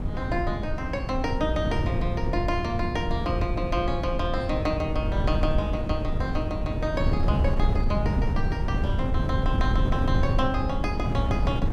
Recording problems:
wind on the microphone; below 140 Hz, SNR -2 dB

